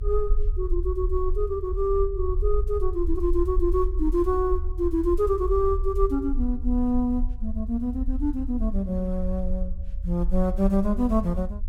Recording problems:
rumble; below 52 Hz, SNR 4 dB

